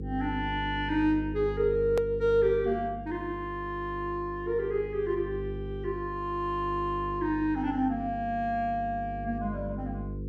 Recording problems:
hum; 50 Hz, harmonics up to 500 Hz, SNR 10 dB
click at an edit; at 2 s

